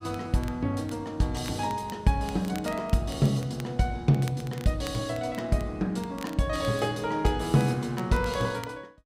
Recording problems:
crackling; vinyl, SNR 21 dB

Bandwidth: 15.5 kHz